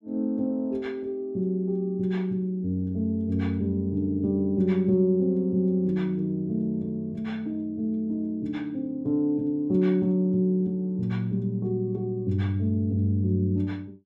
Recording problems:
none

